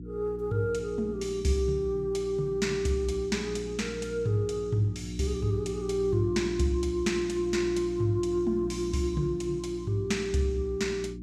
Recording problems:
electrical hum; 60 Hz, harmonics up to 360 Hz, SNR 10 dB

